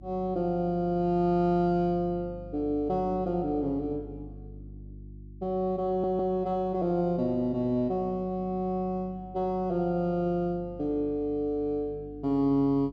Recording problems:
treble cut off; nothing above 8 kHz
hum; 50 Hz, harmonics up to 350 Hz, SNR 18 dB
stutter; at 6 s

